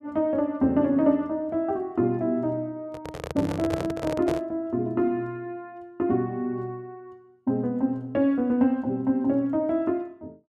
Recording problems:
handling noise; from 3 to 4.5 s; peak -1 dB vs average level

